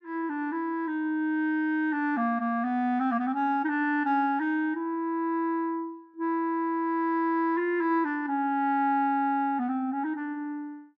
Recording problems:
none

